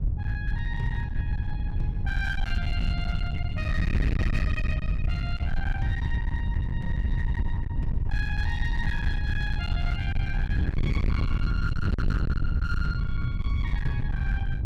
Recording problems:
distorted audio; hard clipping, uneven, signal-to-distortion ratio 7 dB
wind noise; below 100 Hz, SNR -6 dB

